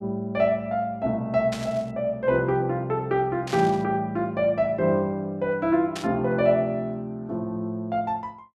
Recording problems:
burst of static; at 1.5 s, at 3.5 s and at 6 s; peak -5 dB vs average level

